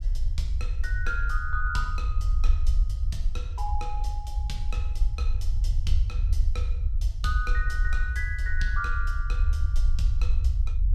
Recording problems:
low-frequency rumble; below 62 Hz, SNR -7 dB

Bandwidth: 14.5 kHz